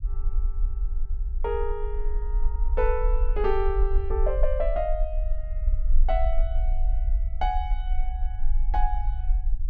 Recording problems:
low-frequency rumble; below 44 Hz, strongest tone 22 Hz, SNR -2 dB

